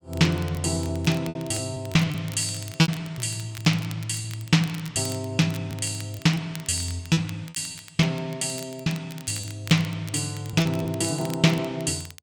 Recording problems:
crackling; vinyl, SNR 19 dB
packet loss; 6% of the sound replaced, filled with repeated pitch periods

